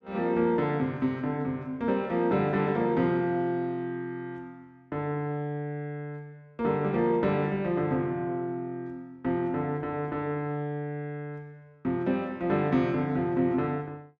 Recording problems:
none

